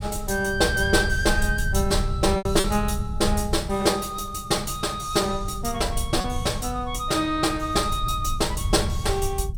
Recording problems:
low-frequency rumble; below 92 Hz, SNR 7 dB
lost packets; 1.7% of the sound replaced, filled with repeated pitch periods

